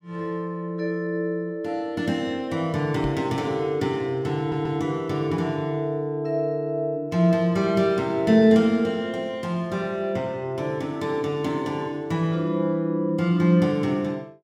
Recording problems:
microphone thump; at 3 s; peak +2 dB vs average level
stutter; at 4.5 s

